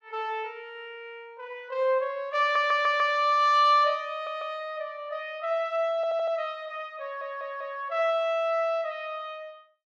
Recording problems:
stutter; 4 times, first at 2.5 s

